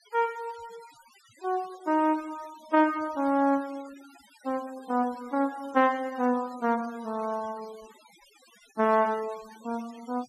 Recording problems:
noise reduction artefacts; signal-to-artefact ratio 22 dB

